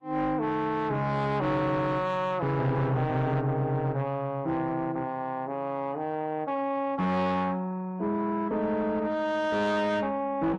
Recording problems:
lossy compression; Vorbis, log-spectral distance 2 dB, nothing above 10.1 kHz
distortion; soft clipping, signal-to-distortion ratio 11 dB

